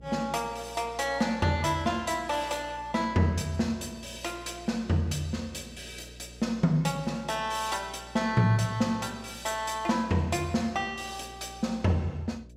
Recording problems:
electrical hum; 60 Hz, harmonics up to 660 Hz, SNR 21 dB

